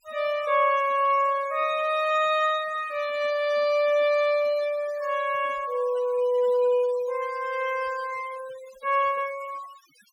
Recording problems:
denoising artefacts; signal-to-artefact ratio 19 dB

